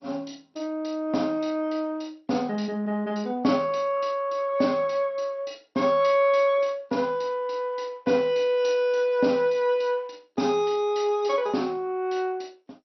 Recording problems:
codec artefacts; MP2, log-spectral distance 3 dB, nothing above 5.8 kHz

